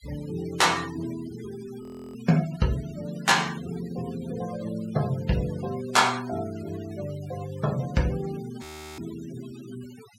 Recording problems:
noise reduction artefacts; signal-to-artefact ratio 18 dB
audio freezing; at 2 s and at 8.5 s

